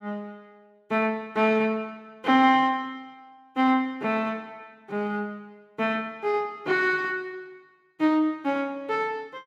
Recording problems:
none

